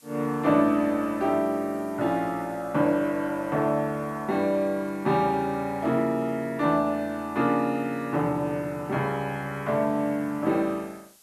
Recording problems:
background hiss; slope +1 dB per octave, SNR 28 dB

